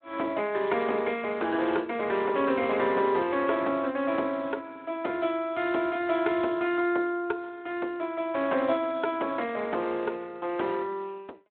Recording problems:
telephone audio; 260 Hz to 3.6 kHz, Speex

